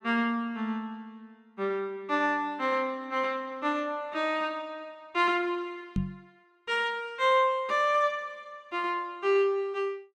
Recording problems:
microphone bump; at 6 s; peak +3 dB vs average level

